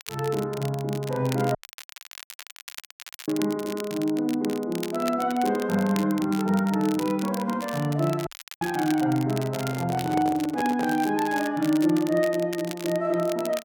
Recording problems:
crackling; vinyl, SNR 15 dB
dropout; at 1.5 s for 1.5 s and at 8.5 s
microphone handling noise; from 9.5 to 11 s; peak -2 dB vs average level

